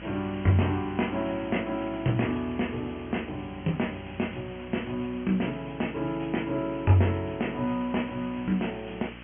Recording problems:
treble missing; nothing above 3.1 kHz
mains hum; 60 Hz, harmonics up to 2 kHz, SNR 17 dB
background hiss; SNR 18 dB

